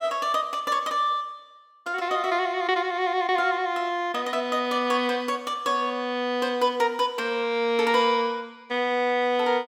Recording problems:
none

